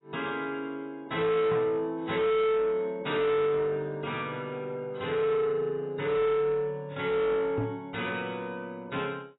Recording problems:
lossy codec; AAC, log-spectral distance 3 dB, nothing above 3.8 kHz
distorted audio; soft clipping, signal-to-distortion ratio 7 dB
microphone thump; at 1.5 s and at 7.5 s; peak +2 dB vs average level

